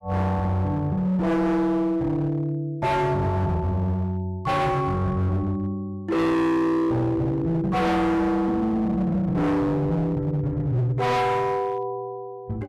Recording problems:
distortion; hard clipping, signal-to-distortion ratio 6 dB

